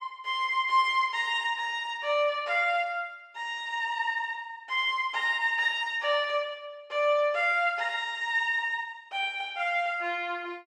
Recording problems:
none

